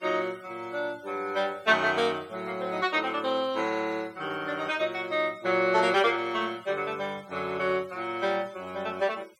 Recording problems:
denoising artefacts; signal-to-artefact ratio 25 dB

